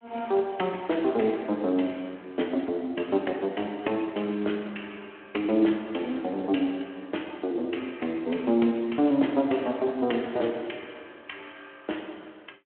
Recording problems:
telephone audio; 220 Hz to 3.3 kHz, Speex

